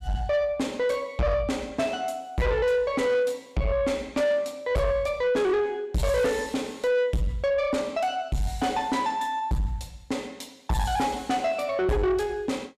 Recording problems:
distortion; soft clipping, signal-to-distortion ratio 8 dB

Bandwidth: 14.5 kHz